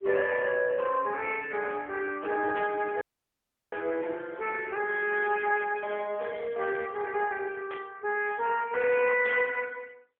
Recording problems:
phone line; 260 Hz to 3.3 kHz, AMR-NB
burst of static; at 2.5 s, at 7.5 s and at 9 s; peak -9 dB vs average level
audio cutting out; at 3 s for 0.5 s

